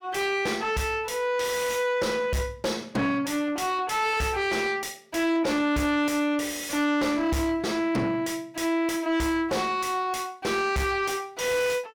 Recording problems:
distortion; soft clipping, signal-to-distortion ratio 7 dB

